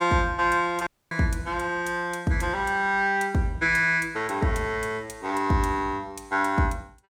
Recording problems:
dropout; at 1 s

